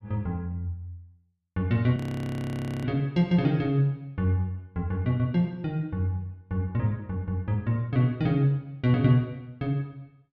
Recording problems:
frozen audio; at 2 s for 1 s

